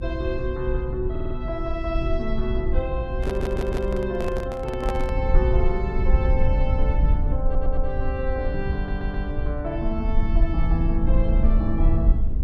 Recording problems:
rumble; below 62 Hz, SNR -3 dB
stutter; 4 times, first at 1 s
microphone handling noise; from 3 to 5 s; peak +2 dB vs average level

